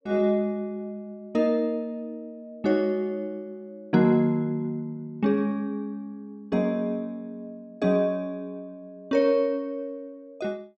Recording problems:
none

